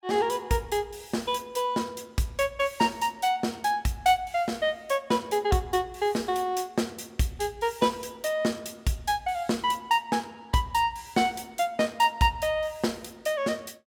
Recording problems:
none

